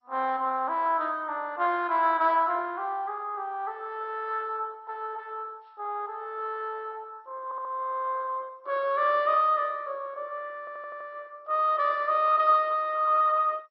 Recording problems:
lossy codec; MP2, log-spectral distance 3 dB, nothing above 5 kHz
audio stuttering; at 7.5 s and at 11 s

